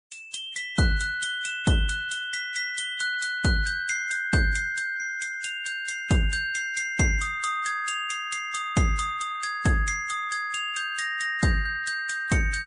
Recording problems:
lossy compression; Vorbis, then MP3, log-spectral distance 3 dB, nothing above 9.5 kHz

